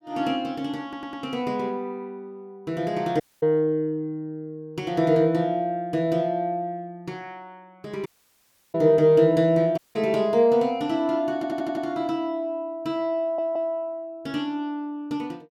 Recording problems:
stutter; at 1 s, at 11 s and at 13 s
audio cutting out; at 3 s, at 8 s for 0.5 s and at 10 s

